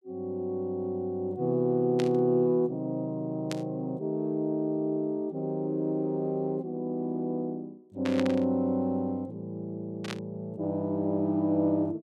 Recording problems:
burst of static; 4 times, first at 2 s; peak -2 dB vs average level

